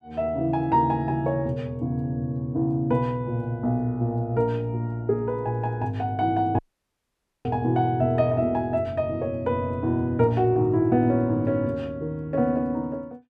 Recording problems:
audio cutting out; at 6.5 s for 1 s

